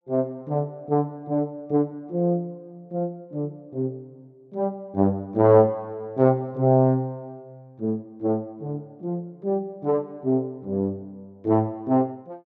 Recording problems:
none

